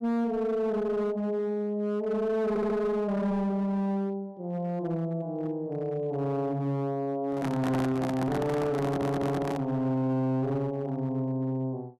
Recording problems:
distorted audio; hard clipping, signal-to-distortion ratio 11 dB
audio stuttering; at 2.5 s and at 9 s
handling noise; from 7.5 to 9.5 s; peak 0 dB vs average level

